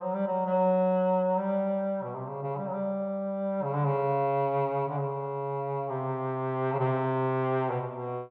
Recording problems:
none

